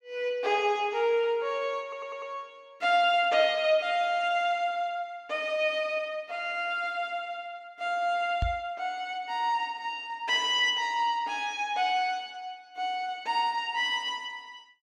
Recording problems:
stutter; at 2 s
microphone thump; at 8.5 s; peak +2 dB vs average level

